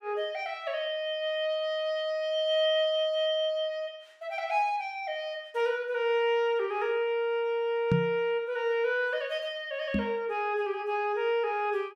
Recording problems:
microphone bump; at 8 s and at 10 s; peak +6 dB vs average level

